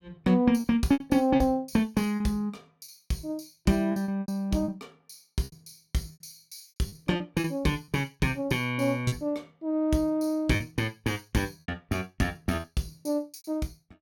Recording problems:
packet loss; 9% of the sound replaced, filled with repeated pitch periods

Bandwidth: 17.5 kHz